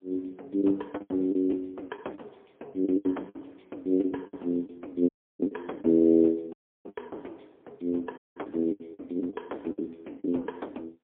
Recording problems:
phone line; 220 Hz to 3.7 kHz, AMR-NB, then MP3
packet loss; 11% of the sound replaced, filled with the last packet
audio cutting out; at 5 s, at 6.5 s and at 8 s

